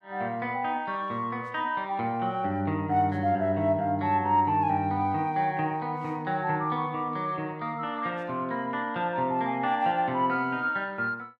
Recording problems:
none

